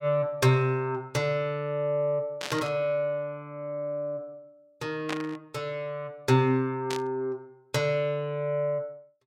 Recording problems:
static burst; at 2.5 s, at 5 s and at 7 s; peak -1 dB vs average level

